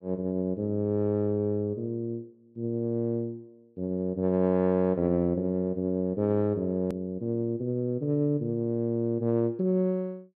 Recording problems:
click at an edit; at 7 s

